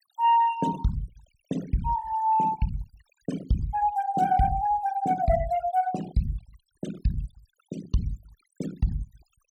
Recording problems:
noise reduction artefacts; signal-to-artefact ratio 17 dB

